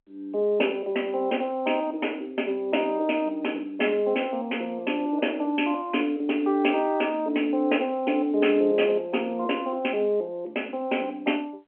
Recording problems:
phone line; 220 Hz to 3.2 kHz, G.711

